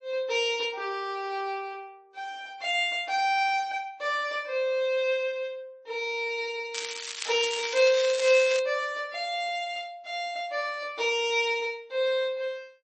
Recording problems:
codec artefacts; MP3, log-spectral distance 3 dB, nothing above 7.8 kHz
crackling; from 6.5 to 8.5 s; loose cable, SNR 7 dB

